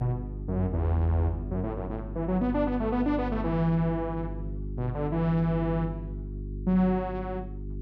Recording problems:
hum; 50 Hz, harmonics up to 400 Hz, SNR 8 dB

